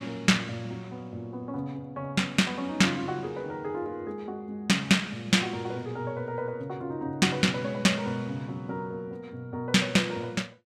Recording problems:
none

